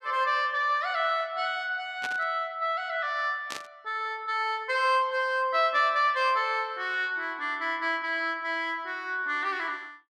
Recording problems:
static burst; at 2 s and at 3.5 s; peak -4 dB vs average level

